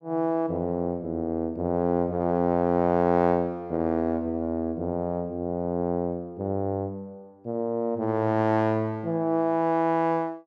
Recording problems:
none

